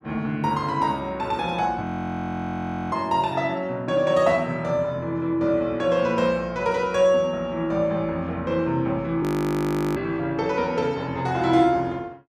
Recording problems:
audio freezing; at 2 s for 1 s and at 9 s for 0.5 s

